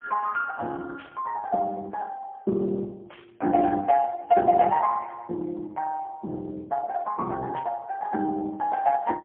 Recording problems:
phone line; 300 Hz to 2.8 kHz, AMR-NB, then MP3
static burst; at 1 s, at 3 s and at 7.5 s; peak -16 dB vs average level

